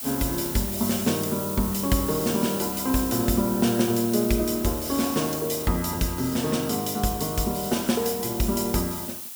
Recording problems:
hiss; slope +3 dB per octave, SNR 7 dB

